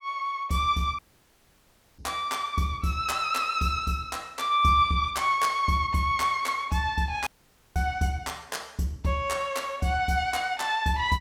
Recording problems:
audio cutting out; at 1 s for 1 s and at 7.5 s

